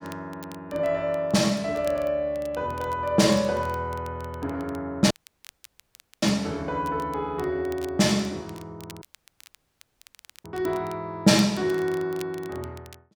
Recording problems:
crackle; vinyl, SNR 24 dB
dropout; at 5 s for 1 s and at 9 s for 1.5 s

